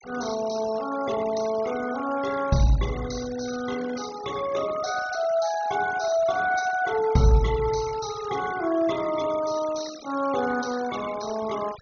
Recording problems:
treble cut off; nothing above 6.7 kHz
denoising artefacts; signal-to-artefact ratio 16 dB

